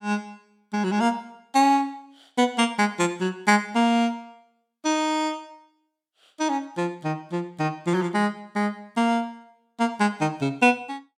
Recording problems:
none

